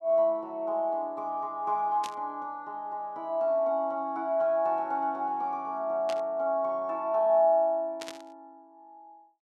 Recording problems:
static burst; at 2 s, at 6 s and at 8 s; peak -7 dB vs average level

